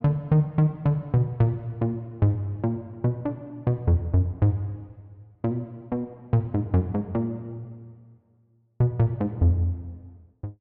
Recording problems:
none

